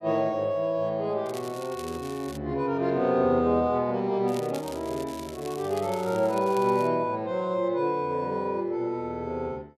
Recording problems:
crackle; from 1.5 to 2.5 s and from 4.5 to 7 s; loose cable, SNR 19 dB

